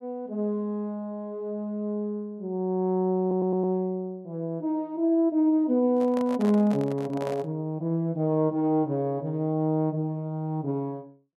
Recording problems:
stutter; at 3 s
handling noise; from 6 to 7.5 s; peak -6 dB vs average level

